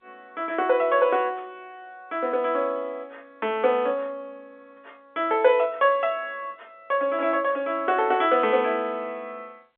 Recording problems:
phone line; 300 Hz to 3.5 kHz, G.711

